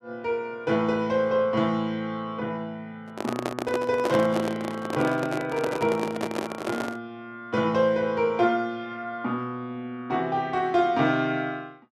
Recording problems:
microphone handling noise; from 3 to 7 s; peak +2 dB vs average level

